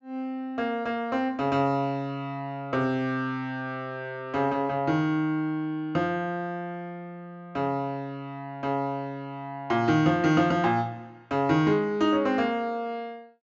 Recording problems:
treble missing; nothing above 8 kHz

